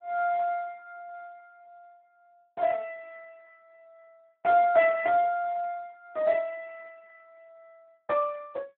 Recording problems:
telephone audio; 170 Hz to 2.7 kHz, Speex

